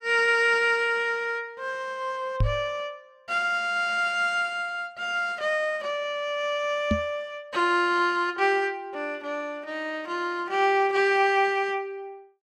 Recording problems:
knock on the microphone; at 2.5 s and at 7 s; peak +4 dB vs average level

